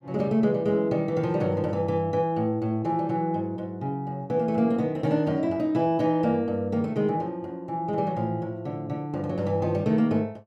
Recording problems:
none

